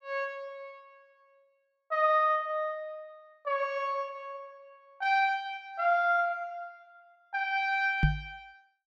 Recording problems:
knock on the microphone; at 8 s; peak +7 dB vs average level

